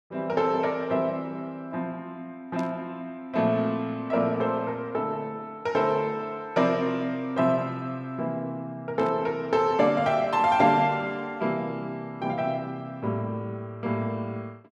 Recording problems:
static burst; at 2.5 s and at 9 s; peak -13 dB vs average level

